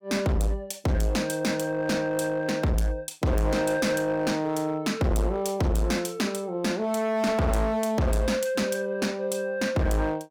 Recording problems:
distorted audio; hard clipping, signal-to-distortion ratio 8 dB

